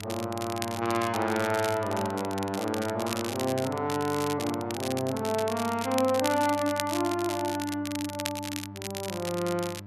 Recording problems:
electrical hum; 50 Hz, harmonics up to 1.3 kHz, SNR 14 dB
crackle; vinyl, SNR 9 dB

